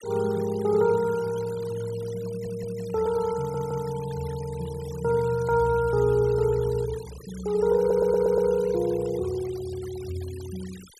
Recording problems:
denoising artefacts; signal-to-artefact ratio 20 dB
audio stuttering; at 2.5 s, at 3.5 s and at 8 s

